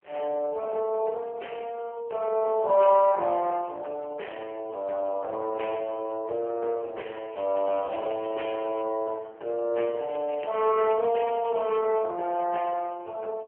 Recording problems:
telephone audio; 340 Hz to 3.1 kHz, AMR-NB
crackling; from 7.5 to 9 s and from 10 to 12 s; loose cable, SNR 20 dB

